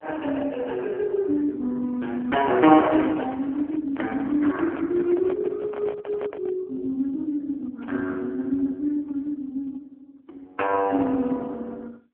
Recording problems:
telephone audio; 220 Hz to 3.3 kHz, AMR-NB
microphone handling noise; from 2.5 to 6.5 s; peak -6 dB vs average level

